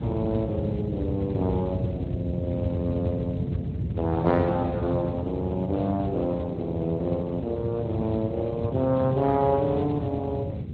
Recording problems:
codec artefacts; Speex, then Opus, log-spectral distance 2 dB
rumble; below 190 Hz, SNR 4 dB

